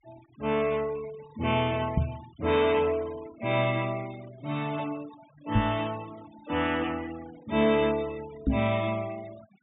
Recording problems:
treble missing; nothing above 4 kHz
denoising artefacts; signal-to-artefact ratio 19 dB
microphone bump; at 2 s, at 5.5 s and at 8.5 s; peak +7 dB vs average level

